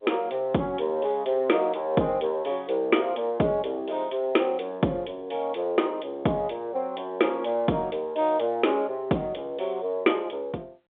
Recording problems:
telephone audio; 170 Hz to 3.6 kHz, G.711

